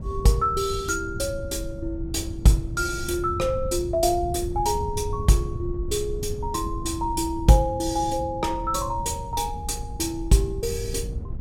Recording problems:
wind on the microphone; below 110 Hz, SNR 9 dB

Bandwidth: 16.5 kHz